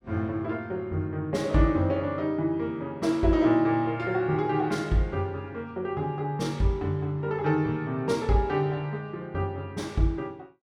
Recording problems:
none

